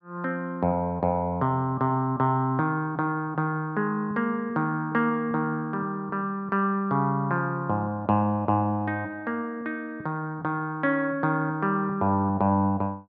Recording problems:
none

